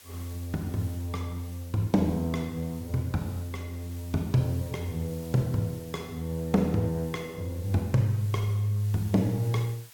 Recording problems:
lossy codec; Opus, log-spectral distance 2 dB, nothing above 15.5 kHz
background hiss; slope +2 dB per octave, SNR 20 dB

